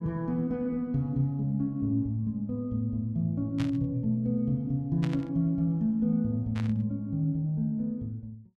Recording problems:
burst of static; at 3.5 s, at 5 s and at 6.5 s; peak -7 dB vs average level

